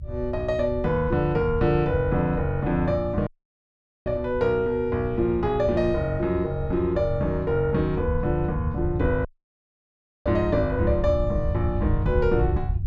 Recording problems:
rumble; below 96 Hz, SNR 7 dB
audio cutting out; at 3.5 s for 1 s and at 9.5 s for 1 s

